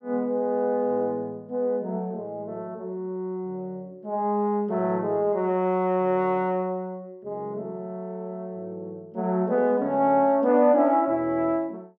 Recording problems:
none

